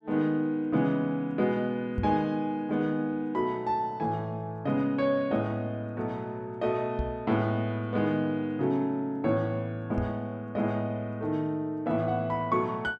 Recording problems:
microphone bump; at 2 s, at 7 s and at 10 s; peak +2 dB vs average level

